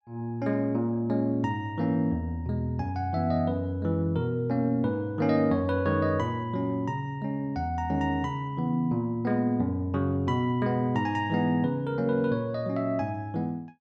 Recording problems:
none

